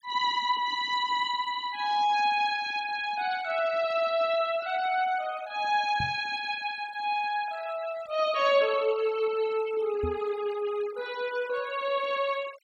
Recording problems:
denoising artefacts; signal-to-artefact ratio 19 dB
knock on the microphone; at 6 s and at 10 s; peak -2 dB vs average level

